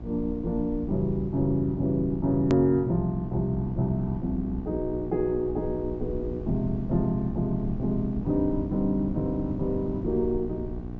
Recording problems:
treble missing; nothing above 7.6 kHz
electrical hum; 60 Hz, harmonics up to 1.1 kHz, SNR 11 dB
low-frequency rumble; below 88 Hz, SNR 13 dB
hard cut with a click; at 2.5 s

